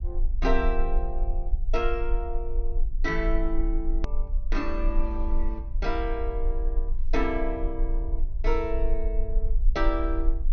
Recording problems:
low-pass filter; nothing above 6.4 kHz
low-frequency rumble; below 38 Hz, strongest tone 20 Hz, SNR -1 dB
edit click; at 4 s

